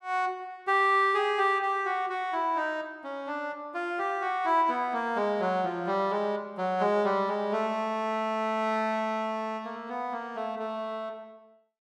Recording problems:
none

